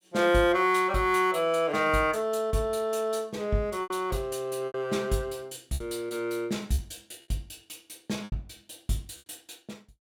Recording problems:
packet loss; 4% of the sound replaced, filled with repeated pitch periods

